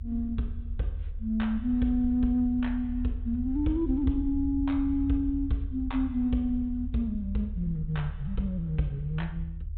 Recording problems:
low-pass filter; nothing above 4 kHz
low-frequency rumble; below 76 Hz, SNR 8 dB

